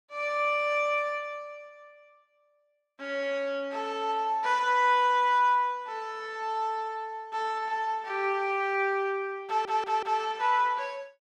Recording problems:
stutter; at 9.5 s

